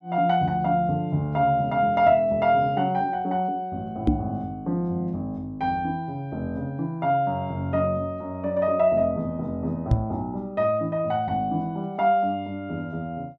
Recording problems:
knock on the microphone; at 4 s and at 10 s; peak +8 dB vs average level

